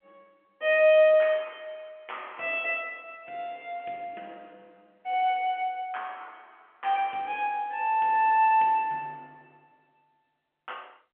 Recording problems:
telephone audio; 280 Hz to 3.2 kHz, G.711

